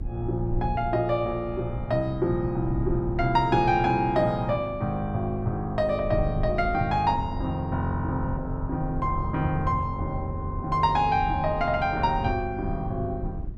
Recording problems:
rumble; below 98 Hz, SNR 10 dB

